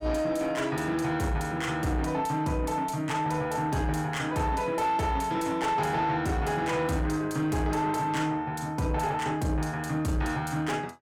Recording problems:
distorted audio; soft clipping, signal-to-distortion ratio 11 dB

